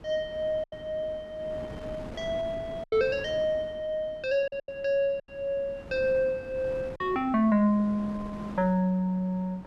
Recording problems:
wind noise; below 570 Hz, SNR 16 dB
packet loss; 4% of the sound replaced, filled with silence

